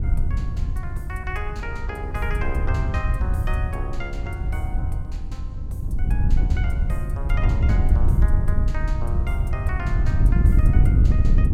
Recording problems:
wind on the microphone; below 90 Hz, SNR -11 dB

